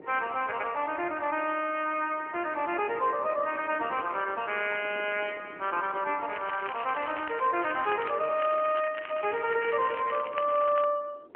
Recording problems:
phone line; 300 Hz to 3.2 kHz, AMR-NB
wind noise; below 530 Hz, SNR 20 dB
crackling; from 6.5 to 11 s; loose cable, SNR 13 dB

